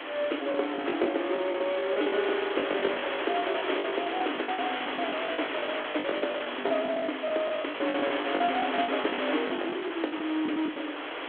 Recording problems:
telephone audio; 260 Hz to 3.4 kHz, G.726
hiss; SNR 3 dB
lost packets; 17% of the sound replaced, filled with the last packet

